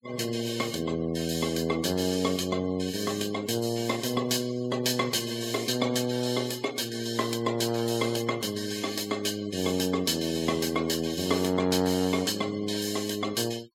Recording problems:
denoising artefacts; signal-to-artefact ratio 19 dB

